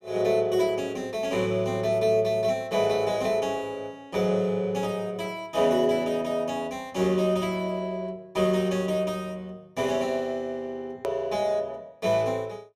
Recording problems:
edit click; at 11 s

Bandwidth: 14.5 kHz